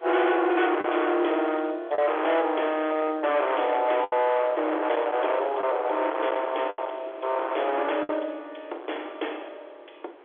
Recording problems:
phone line; 320 Hz to 3.5 kHz, G.711
distorted audio; hard clipping, signal-to-distortion ratio 7 dB
wind on the microphone; below 1.2 kHz, SNR 14 dB
lost packets; 3% of the sound replaced, filled with the last packet

